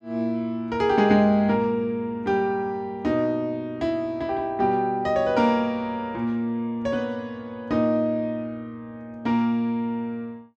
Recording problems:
none

